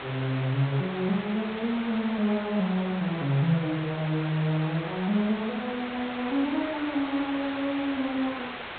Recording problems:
treble cut off; nothing above 4 kHz
background hiss; SNR 9 dB

